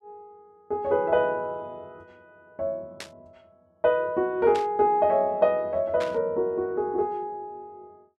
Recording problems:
burst of static; at 3 s, at 4.5 s and at 6 s; peak -8 dB vs average level

